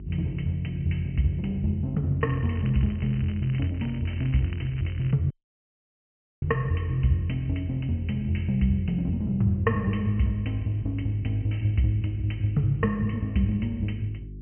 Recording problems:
low-pass filter; nothing above 3.1 kHz
hum; 50 Hz, harmonics up to 400 Hz, SNR 14 dB
crackling; from 2 to 5 s; loose cable, SNR 21 dB
audio cutting out; at 5.5 s for 1 s

